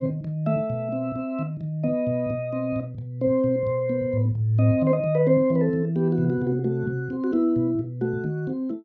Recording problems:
none

